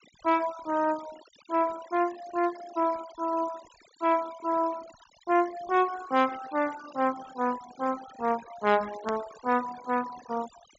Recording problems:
treble cut off; nothing above 7.6 kHz
denoising artefacts; signal-to-artefact ratio 17 dB
edit click; at 9 s

